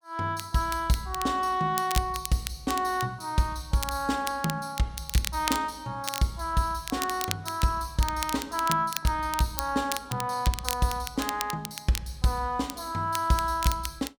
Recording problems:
crackling; vinyl, SNR 8 dB

